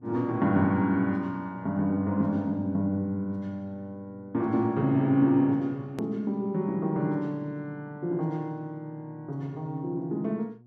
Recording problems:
hum; 60 Hz, harmonics up to 720 Hz, SNR 25 dB
click at an edit; at 6 s

